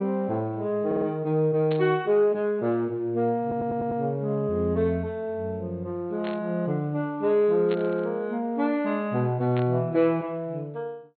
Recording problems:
low-pass filter; nothing above 4.3 kHz
audio stuttering; at 1 s and at 3.5 s
static burst; 4 times, first at 1.5 s; peak -9 dB vs average level

